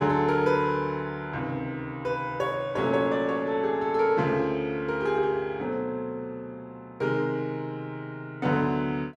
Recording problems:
none

